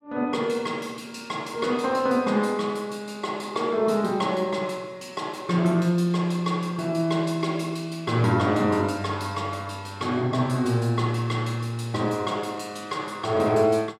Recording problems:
none

